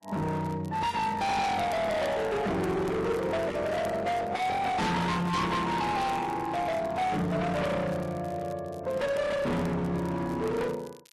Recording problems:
lossy compression; AAC, then AAC, log-spectral distance 2 dB, nothing above 11.6 kHz
distorted audio; hard clipping, signal-to-distortion ratio 6 dB
crackle; vinyl, SNR 26 dB

